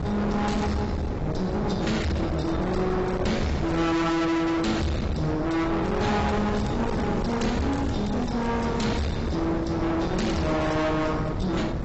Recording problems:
lossy compression; AAC, log-spectral distance 3 dB, nothing above 7.8 kHz
distortion; soft clipping, signal-to-distortion ratio 6 dB
wind noise; below 590 Hz, SNR 3 dB
crackling; at 3.5 s and from 6 to 9 s; loose cable, SNR 23 dB

